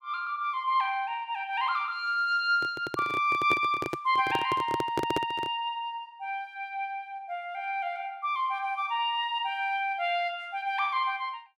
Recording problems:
microphone handling noise; from 2.5 to 5.5 s; peak +3 dB vs average level

